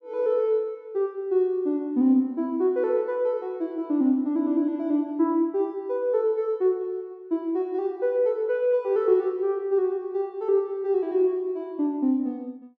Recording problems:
none

